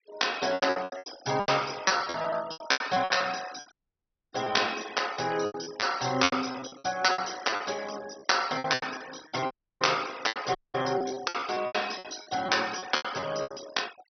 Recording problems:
treble cut off; nothing above 6 kHz
noise reduction artefacts; signal-to-artefact ratio 16 dB
packet loss; 19% of the sound replaced, filled with repeated pitch periods
audio cutting out; at 3.5 s for 0.5 s, at 9.5 s and at 11 s

